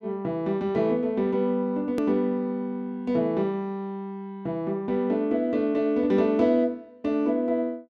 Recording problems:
edit click; at 2 s

